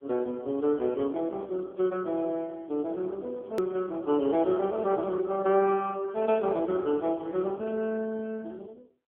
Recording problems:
telephone audio; 240 Hz to 3.5 kHz, AMR-NB
click at an edit; at 3.5 s

